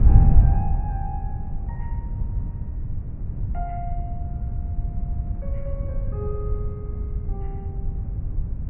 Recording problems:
treble cut off; nothing above 3.1 kHz
wind noise; below 110 Hz, SNR -12 dB

